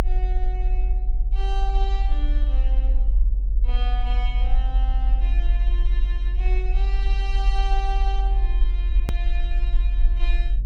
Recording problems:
hum; 50 Hz, harmonics up to 600 Hz, SNR 19 dB
rumble; below 46 Hz, strongest tone 44 Hz, SNR -12 dB
click at an edit; at 9 s

